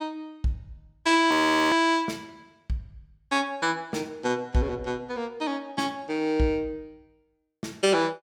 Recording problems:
frozen audio; at 1.5 s

